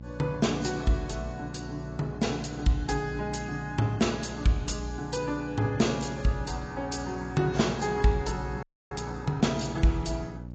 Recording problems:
codec artefacts; AAC, log-spectral distance 4 dB, nothing above 7.3 kHz
hum; 60 Hz, harmonics up to 600 Hz, SNR 12 dB
audio freezing; at 8.5 s

